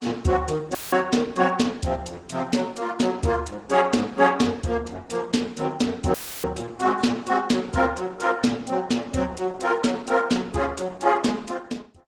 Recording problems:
lossy codec; AAC, then Opus, log-spectral distance 4 dB
dropout; at 1 s and at 6 s; filled with static

